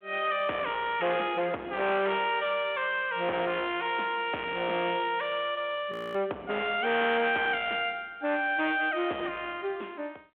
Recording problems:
phone line; 260 Hz to 3.5 kHz, G.726
distortion; hard clipping, signal-to-distortion ratio 8 dB
audio freezing; at 6 s

